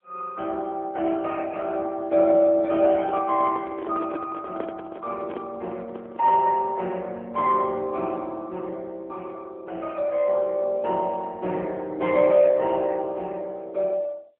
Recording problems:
phone line; 240 Hz to 3.1 kHz, AMR-NB
handling noise; from 3 to 6.5 s; peak -5 dB vs average level

